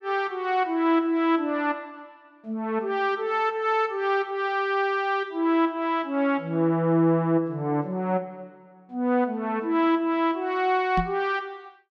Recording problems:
microphone thump; at 11 s; peak 0 dB vs average level

